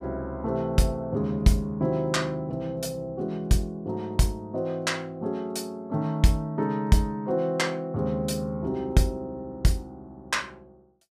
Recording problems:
none

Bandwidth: 15.5 kHz